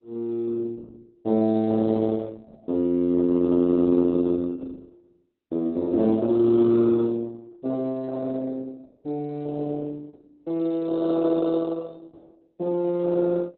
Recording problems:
lossy codec; Opus, log-spectral distance 2 dB, nothing above 4 kHz

